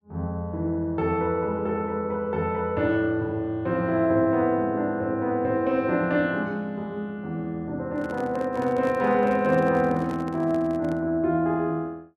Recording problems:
handling noise; from 8 to 11 s; peak -9 dB vs average level

